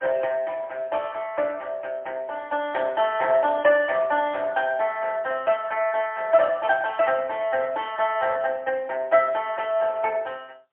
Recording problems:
telephone audio; 260 Hz to 3.3 kHz, AMR-NB, then MP3

